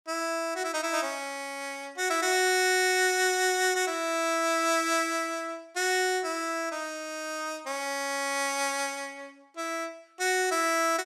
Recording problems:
none

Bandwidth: 14 kHz